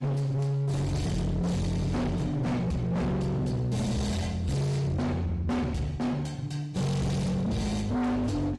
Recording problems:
codec artefacts; AAC, log-spectral distance 2 dB, nothing above 11.3 kHz
distortion; hard clipping, signal-to-distortion ratio 6 dB

